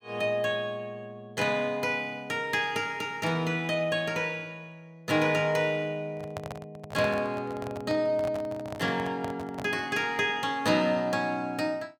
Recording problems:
handling noise; from 6 to 10 s; peak -4 dB vs average level

